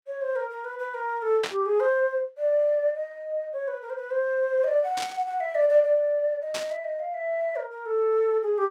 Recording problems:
static burst; at 1.5 s, at 5 s and at 6.5 s; peak -1 dB vs average level

